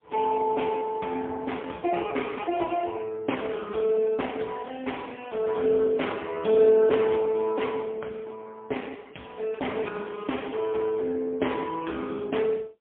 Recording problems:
phone line; 280 Hz to 3.7 kHz, AMR-NB, then MP3

